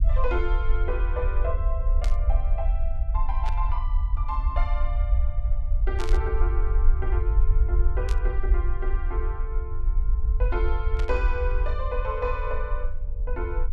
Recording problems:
low-frequency rumble; below 56 Hz, SNR -7 dB
burst of static; 5 times, first at 2 s; peak -1 dB vs average level

